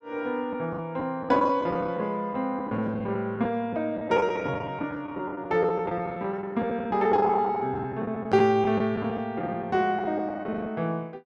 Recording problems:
packet loss; 12% of the sound replaced, filled with the last packet

